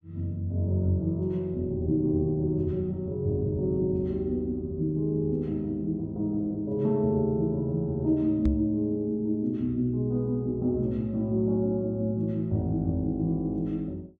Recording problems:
microphone thump; at 8.5 s; peak +4 dB vs average level

